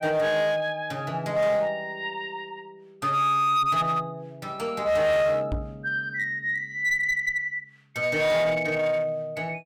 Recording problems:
distortion; hard clipping, uneven, signal-to-distortion ratio 10 dB
knock on the microphone; at 5.5 s; peak -2 dB vs average level

